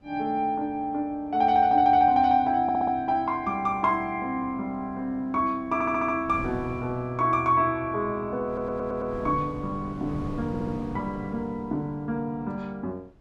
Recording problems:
wind on the microphone; below 320 Hz, SNR 16 dB
audio stuttering; 4 times, first at 2.5 s

